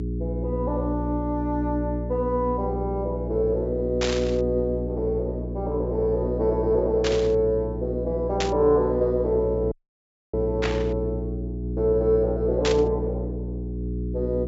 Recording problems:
treble cut off; nothing above 8 kHz
hum; 60 Hz, harmonics up to 420 Hz, SNR 5 dB
burst of static; 5 times, first at 4 s; peak +2 dB vs average level
dropout; at 9.5 s for 0.5 s

